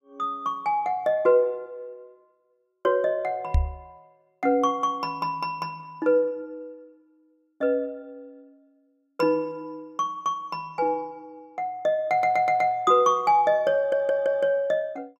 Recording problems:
knock on the microphone; at 3.5 s; peak +5 dB vs average level
stutter; at 12 s and at 14 s

